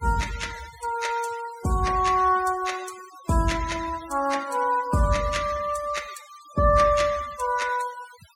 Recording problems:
noise reduction artefacts; signal-to-artefact ratio 16 dB

